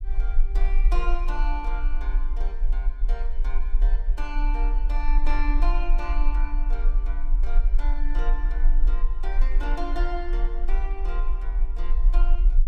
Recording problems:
low-frequency rumble; below 36 Hz, strongest tone 22 Hz, SNR -10 dB

